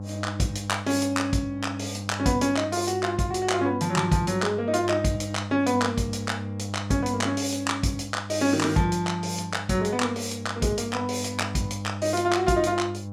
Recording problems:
mains hum; 50 Hz, harmonics up to 800 Hz, SNR 10 dB

